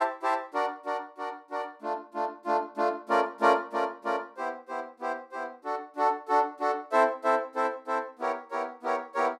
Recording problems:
none

